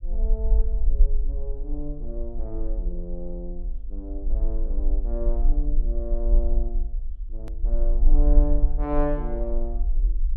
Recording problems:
rumble; below 42 Hz, strongest tone 24 Hz, SNR -7 dB
edit click; at 7.5 s

